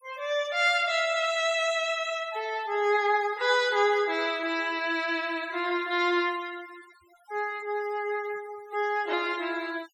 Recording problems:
denoising artefacts; signal-to-artefact ratio 20 dB

